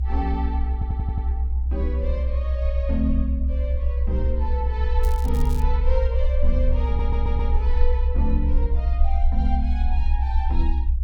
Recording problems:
low-frequency rumble; below 64 Hz, SNR -8 dB
wind noise; below 150 Hz, SNR 12 dB
audio stuttering; at 0.5 s and at 7 s
crackle; at 5 s; loose cable, SNR 14 dB

